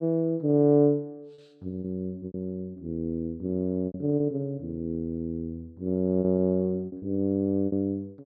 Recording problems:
packet loss; 7% of the sound replaced, filled with repeated pitch periods

